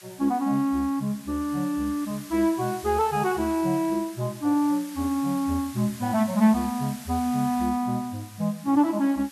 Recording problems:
hiss; SNR 18 dB

